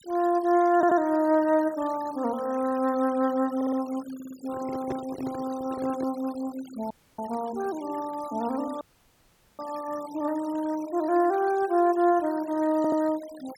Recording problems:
noise reduction artefacts; signal-to-artefact ratio 21 dB
audio stuttering; 4 times, first at 1 s
microphone handling noise; from 4.5 to 6 s; peak -3 dB vs average level
dropout; at 7 s and at 9 s for 1 s

